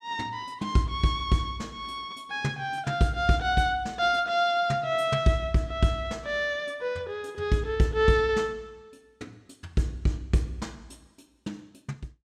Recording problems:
none

